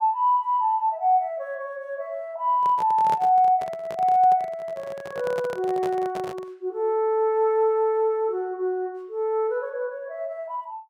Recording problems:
handling noise; from 2.5 to 6.5 s; peak -6 dB vs average level

